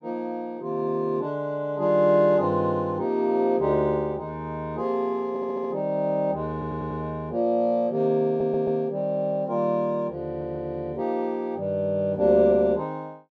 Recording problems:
stutter; 4 times, first at 5.5 s

